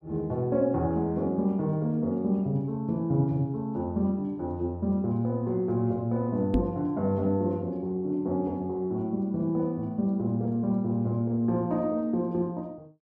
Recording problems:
microphone thump; at 6.5 s; peak +6 dB vs average level

